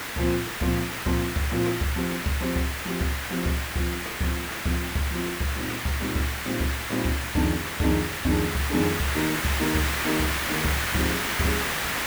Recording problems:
background hiss; SNR 1 dB

